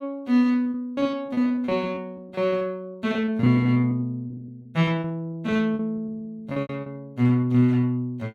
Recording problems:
packet loss; 17% of the sound replaced, filled with repeated pitch periods

